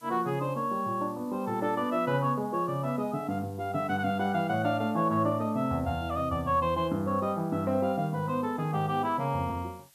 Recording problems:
hiss; slope +1 dB per octave, SNR 28 dB

